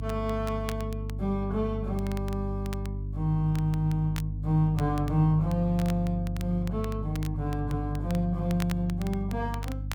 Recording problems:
hum; 50 Hz, harmonics up to 300 Hz, SNR 5 dB
crackling; vinyl, SNR 18 dB

